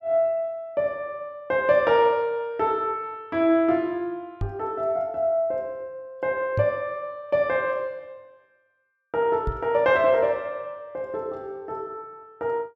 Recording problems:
knock on the microphone; at 4.5 s, at 6.5 s and at 9.5 s; peak +1 dB vs average level

